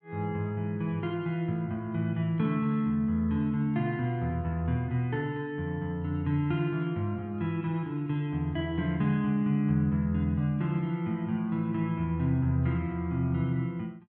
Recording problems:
none

